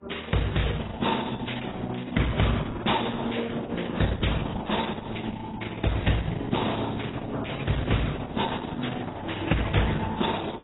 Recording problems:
codec artefacts; Opus, then AAC, log-spectral distance 6 dB, nothing above 3.8 kHz

